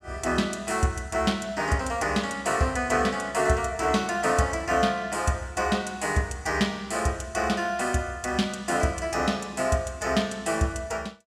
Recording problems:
none

